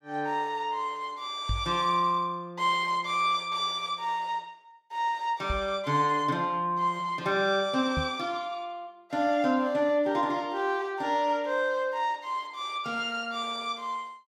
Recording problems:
microphone thump; at 1.5 s, at 5.5 s and at 8 s; peak +1 dB vs average level

